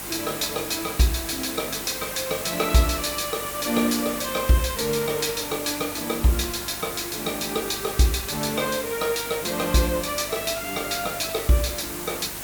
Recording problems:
hum; 50 Hz, harmonics up to 800 Hz, SNR 21 dB
background hiss; slope -2 dB per octave, SNR 6 dB

